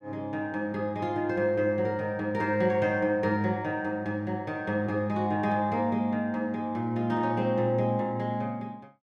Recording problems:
none

